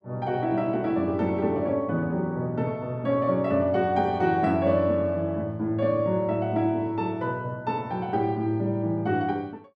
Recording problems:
none

